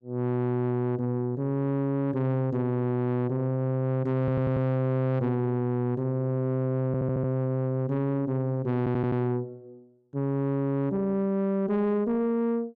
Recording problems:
distortion; soft clipping, signal-to-distortion ratio 12 dB
audio stuttering; at 4 s, at 7 s and at 9 s

